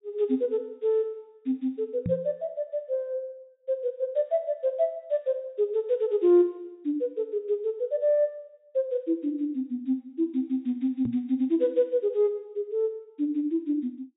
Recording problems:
treble missing; nothing above 4 kHz
knock on the microphone; at 2 s and at 11 s; peak +1 dB vs average level

